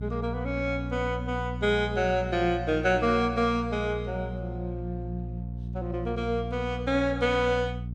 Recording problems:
hum; 60 Hz, harmonics up to 300 Hz, SNR 7 dB

